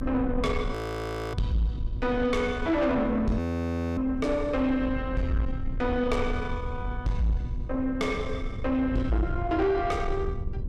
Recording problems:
distortion; soft clipping, signal-to-distortion ratio 11 dB
hum; 60 Hz, harmonics up to 1.2 kHz, SNR 21 dB
low-frequency rumble; below 100 Hz, SNR 8 dB
audio freezing; at 0.5 s for 0.5 s and at 3.5 s for 0.5 s

